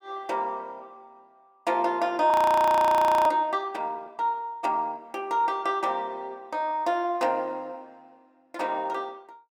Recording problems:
frozen audio; at 2.5 s for 1 s

